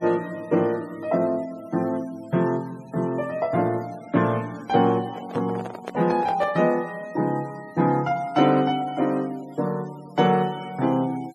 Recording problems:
noise reduction artefacts; signal-to-artefact ratio 25 dB
microphone handling noise; from 5 to 6.5 s; peak -4 dB vs average level

